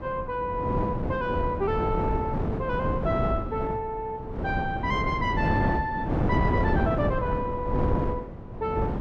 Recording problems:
wind noise; below 390 Hz, SNR -1 dB

